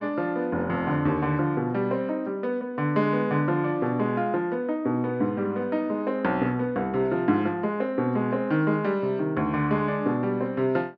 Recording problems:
none

